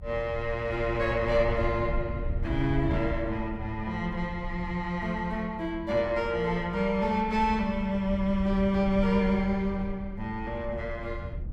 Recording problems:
rumble; below 84 Hz, SNR 10 dB

